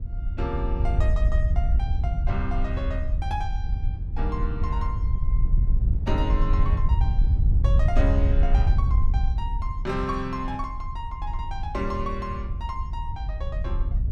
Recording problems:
wind on the microphone; below 72 Hz, SNR -7 dB

